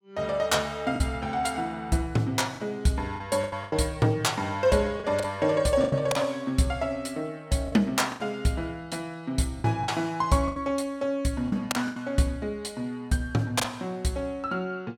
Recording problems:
packet loss; 6% of the sound replaced, filled with the last packet

